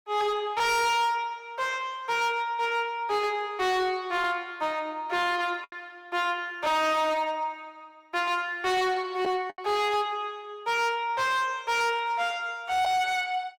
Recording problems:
distortion; hard clipping, signal-to-distortion ratio 8 dB
lost packets; 1.4% of the sound replaced, filled with the last packet

